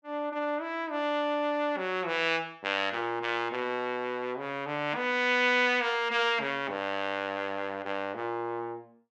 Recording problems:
none

